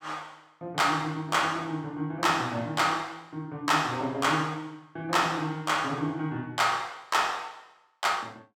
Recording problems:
none

